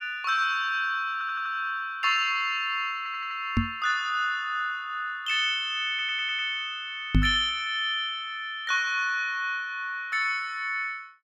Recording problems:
audio stuttering; at 1 s, at 3 s and at 6 s
microphone thump; at 3.5 s and at 7 s; peak +8 dB vs average level

